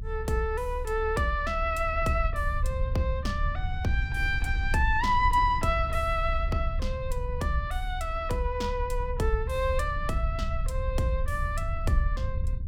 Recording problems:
rumble; below 72 Hz, strongest tone 32 Hz, SNR 4 dB

